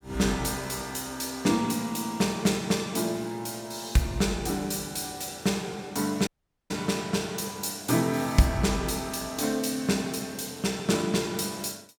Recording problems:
audio cutting out; at 6.5 s

